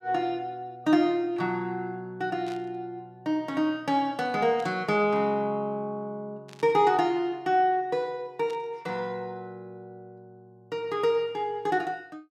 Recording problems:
static burst; 4 times, first at 2.5 s; peak -15 dB vs average level

